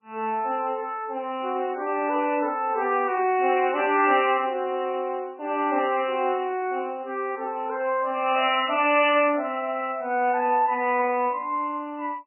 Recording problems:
lossy codec; MP3, log-spectral distance 3 dB, nothing above 2.4 kHz

